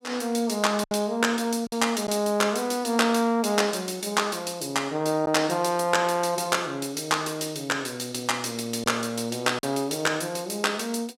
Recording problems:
packet loss; 1.8% of the sound replaced, filled with silence

